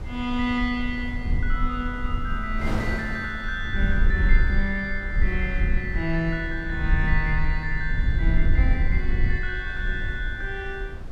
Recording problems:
rumble; below 60 Hz, SNR -1 dB
wind on the microphone; below 460 Hz, SNR 11 dB

